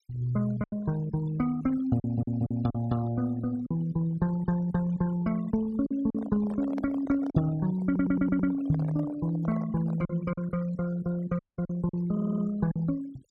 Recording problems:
noise reduction artefacts; signal-to-artefact ratio 20 dB
packet loss; 4% of the sound replaced, filled with silence
stutter; at 2 s, at 8 s and at 12 s
microphone handling noise; from 6 to 10 s; peak -7 dB vs average level
dropout; at 11 s

